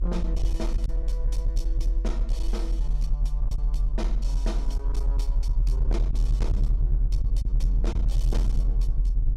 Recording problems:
distortion; hard clipping, signal-to-distortion ratio 11 dB
electrical hum; 50 Hz, harmonics up to 800 Hz, SNR 23 dB
rumble; below 44 Hz, strongest tone 42 Hz, SNR -12 dB
lost packets; 2% of the sound replaced, filled with silence

